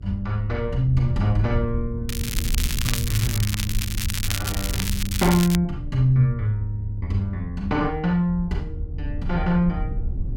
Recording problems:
low-frequency rumble; below 80 Hz, SNR 7 dB
crackling; from 2 to 5.5 s; loose cable, SNR 5 dB

